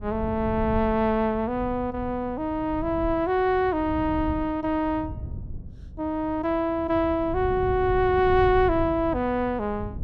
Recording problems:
wind on the microphone; below 120 Hz, SNR 12 dB

